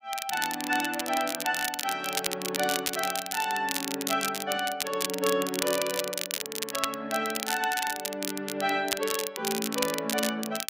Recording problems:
crackle; vinyl, SNR 2 dB

